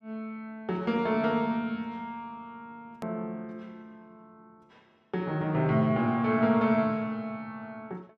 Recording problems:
edit click; at 3 s

